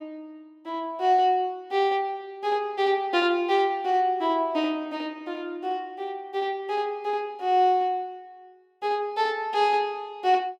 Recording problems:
none

